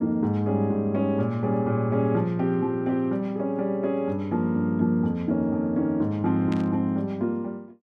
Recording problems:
burst of static; at 6.5 s; peak -11 dB vs average level

